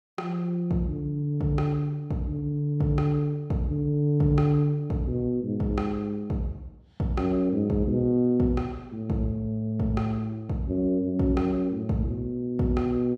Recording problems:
none

